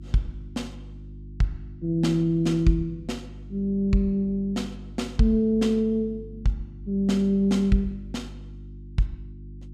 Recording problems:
hum; 50 Hz, harmonics up to 350 Hz, SNR 16 dB

